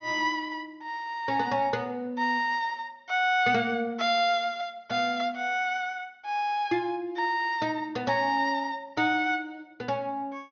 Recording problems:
low-pass filter; nothing above 6.6 kHz

